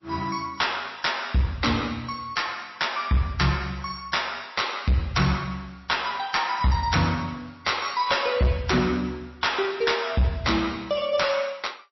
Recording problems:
lossy compression; MP3, log-spectral distance 6 dB, nothing above 5.7 kHz
distortion; hard clipping, uneven, signal-to-distortion ratio 11 dB

